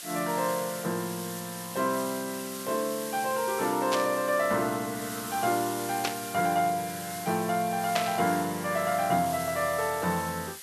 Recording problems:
hiss; slope +3 dB per octave, SNR 9 dB
burst of static; at 4 s, at 6 s and at 8 s; peak +4 dB vs average level

